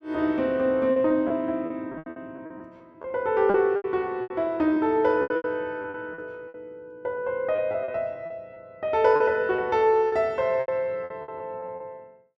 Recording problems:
lost packets; 13% of the sound replaced, filled with repeated pitch periods

